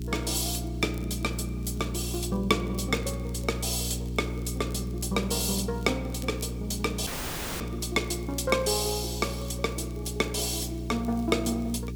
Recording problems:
hum; 60 Hz, harmonics up to 420 Hz, SNR 5 dB
hiss; SNR 25 dB
crackle; vinyl, SNR 25 dB
audio cutting out; at 7 s for 0.5 s

